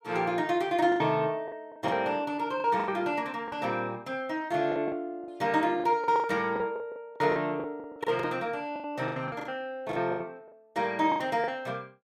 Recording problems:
lost packets; 13% of the sound replaced, filled with the last packet

